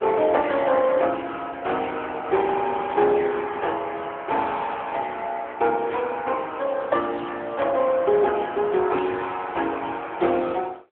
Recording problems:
phone line; 300 Hz to 3.5 kHz, AMR-NB
burst of static; 4 times, first at 3 s; peak -12 dB vs average level

